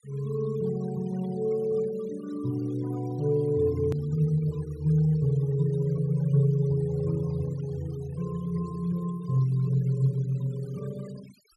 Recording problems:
denoising artefacts; signal-to-artefact ratio 23 dB
edit click; at 4 s

